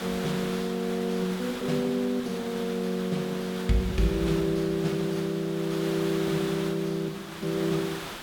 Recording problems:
hiss; SNR 10 dB

